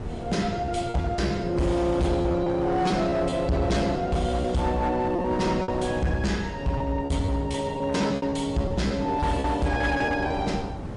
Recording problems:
lossy compression; MP3, log-spectral distance 2 dB, nothing above 10.4 kHz
distortion; hard clipping, signal-to-distortion ratio 10 dB
wind noise; below 340 Hz, SNR 11 dB
lost packets; 8% of the sound replaced, filled with repeated pitch periods

